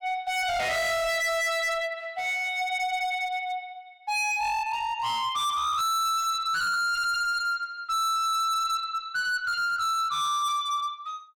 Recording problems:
distorted audio; hard clipping, uneven, signal-to-distortion ratio 6 dB

